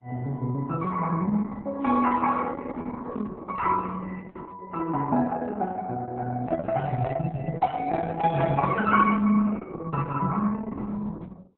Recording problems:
lossy codec; MP3, then Opus, log-spectral distance 3 dB

